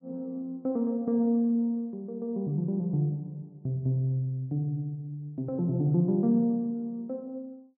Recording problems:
none

